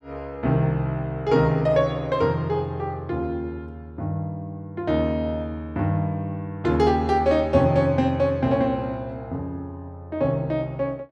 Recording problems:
none

